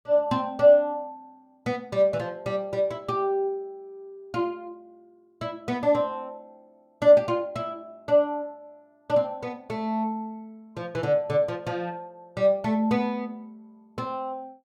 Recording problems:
none

